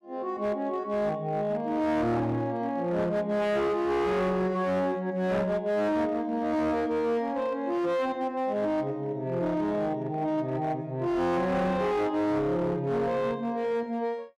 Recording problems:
distorted audio; hard clipping, signal-to-distortion ratio 11 dB

